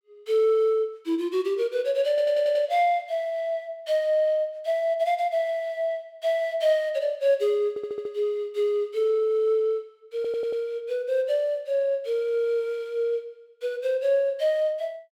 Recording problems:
audio stuttering; at 2 s, at 7.5 s and at 10 s

